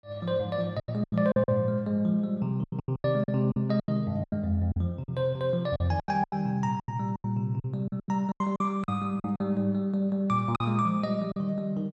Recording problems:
lost packets; 14% of the sound replaced, filled with silence

